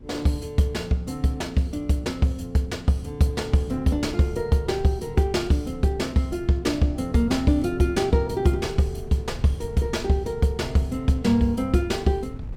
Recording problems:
electrical hum; 60 Hz, harmonics up to 480 Hz, SNR 27 dB
wind on the microphone; below 120 Hz, SNR 18 dB

